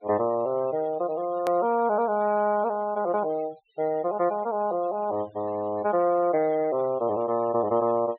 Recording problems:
treble missing; nothing above 4 kHz
noise reduction artefacts; signal-to-artefact ratio 24 dB
edit click; at 1.5 s

